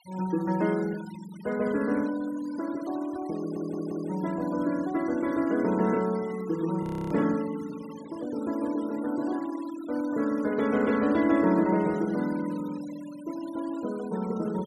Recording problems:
denoising artefacts; signal-to-artefact ratio 19 dB
audio stuttering; at 3.5 s
frozen audio; at 7 s

